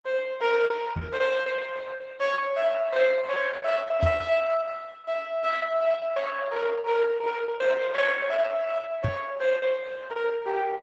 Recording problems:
codec artefacts; Opus, log-spectral distance 4 dB, nothing above 8 kHz
lost packets; 16% of the sound replaced, filled with repeated pitch periods
knock on the microphone; at 1 s, at 4 s and at 9 s; peak +6 dB vs average level

